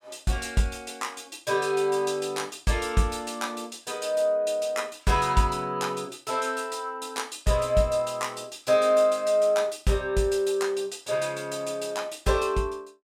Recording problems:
none

